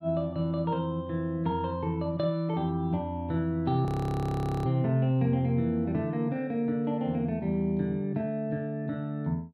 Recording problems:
frozen audio; at 4 s for 1 s

